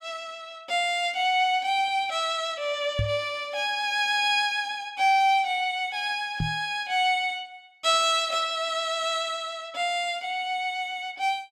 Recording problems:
knock on the microphone; at 3 s and at 6.5 s; peak +1 dB vs average level

